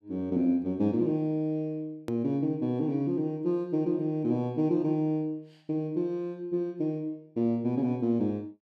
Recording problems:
click at an edit; at 2 s

